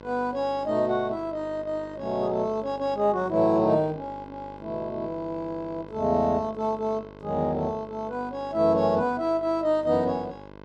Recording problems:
hum; 50 Hz, harmonics up to 2.6 kHz, SNR 18 dB

